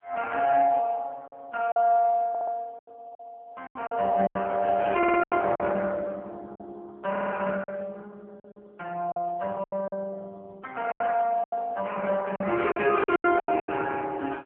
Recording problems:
telephone audio; 320 Hz to 3.1 kHz, AMR-NB
packet loss; 9% of the sound replaced, filled with silence
audio stuttering; at 2.5 s, at 5 s and at 7 s

